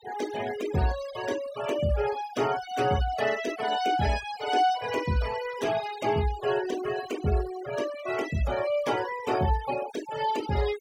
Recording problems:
denoising artefacts; signal-to-artefact ratio 13 dB

